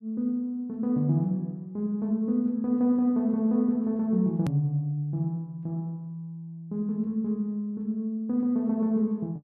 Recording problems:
hard cut with a click; at 4.5 s

